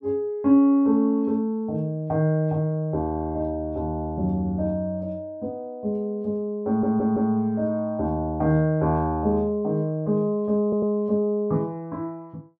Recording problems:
audio stuttering; at 6.5 s and at 11 s

